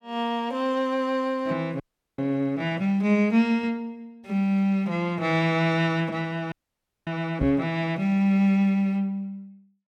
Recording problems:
frozen audio; at 2 s and at 6.5 s for 0.5 s
microphone thump; at 7.5 s; peak 0 dB vs average level

